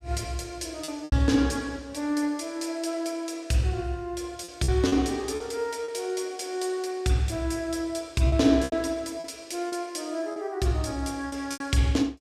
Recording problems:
lost packets; 6% of the sound replaced, filled with repeated pitch periods

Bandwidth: 15 kHz